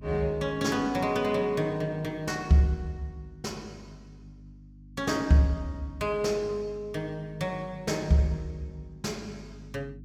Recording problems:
mains hum; 50 Hz, harmonics up to 300 Hz, SNR 20 dB

